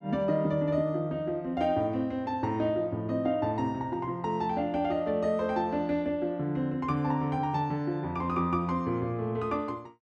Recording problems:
none

